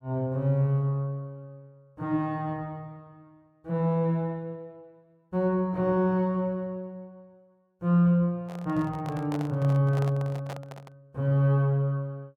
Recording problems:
microphone handling noise; from 8.5 to 11 s; peak -7 dB vs average level

